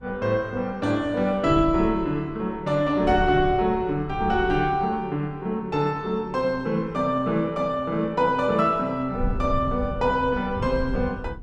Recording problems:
wind noise; below 110 Hz, SNR 11 dB

